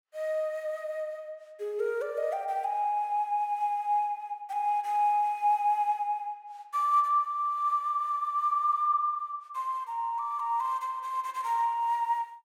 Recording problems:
none

